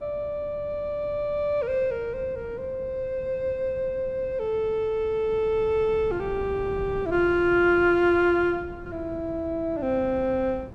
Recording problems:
wind noise; below 250 Hz, SNR 17 dB

